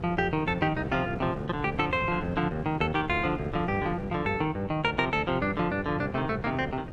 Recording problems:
wind noise; below 310 Hz, SNR 12 dB

